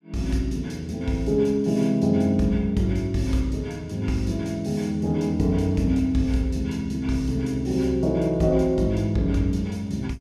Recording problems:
none

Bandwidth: 15 kHz